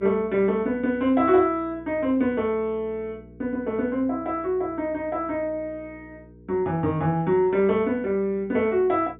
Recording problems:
low-pass filter; nothing above 4 kHz
hum; 60 Hz, harmonics up to 480 Hz, SNR 23 dB

